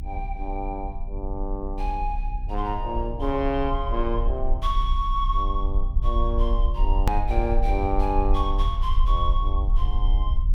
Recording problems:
mains hum; 60 Hz, harmonics up to 660 Hz, SNR 18 dB
low-frequency rumble; below 48 Hz, strongest tone 32 Hz, SNR -1 dB
edit click; at 7 s

